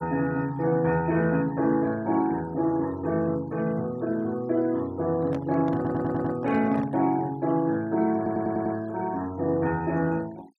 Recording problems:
noise reduction artefacts; signal-to-artefact ratio 24 dB
microphone handling noise; from 5 to 7 s; peak -7 dB vs average level
audio stuttering; at 6 s and at 8 s

